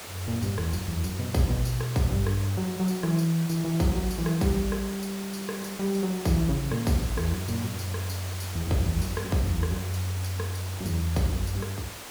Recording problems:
hiss; slope -3 dB per octave, SNR 10 dB

